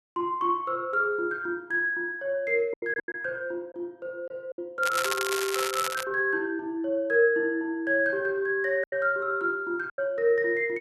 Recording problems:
lost packets; 4% of the sound replaced, filled with silence
crackling; from 5 to 6 s; loose cable, SNR 5 dB

